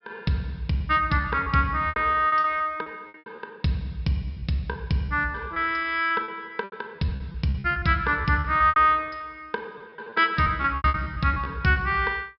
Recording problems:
low-pass filter; nothing above 5.5 kHz
lost packets; 13% of the sound replaced, filled with repeated pitch periods

